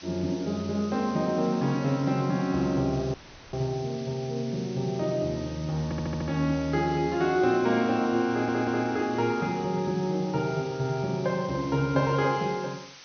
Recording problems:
treble cut off; nothing above 6.3 kHz
hiss; slope +2 dB per octave, SNR 19 dB
audio cutting out; at 3 s
audio stuttering; at 6 s and at 8.5 s

